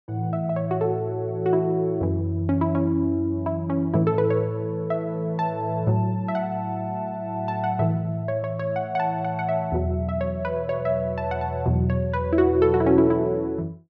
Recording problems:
none

